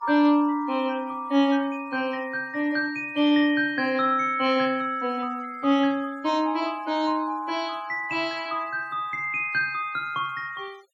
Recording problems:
noise reduction artefacts; signal-to-artefact ratio 26 dB

